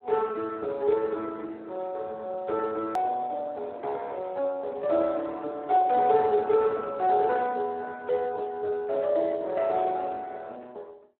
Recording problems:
telephone audio; 300 Hz to 2.2 kHz, Speex
click at an edit; at 3 s

